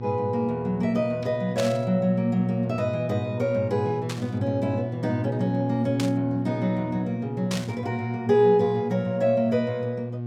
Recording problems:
hum; 60 Hz, harmonics up to 720 Hz, SNR 7 dB
static burst; 4 times, first at 1.5 s; peak -2 dB vs average level

